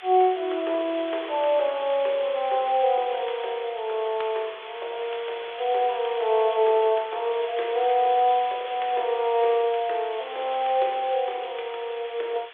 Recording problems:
telephone audio; 340 Hz to 3.6 kHz, G.726
background hiss; SNR 15 dB

